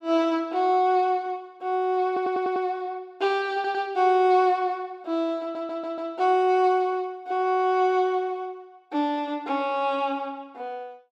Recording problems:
stutter; at 2 s, at 3.5 s and at 5.5 s

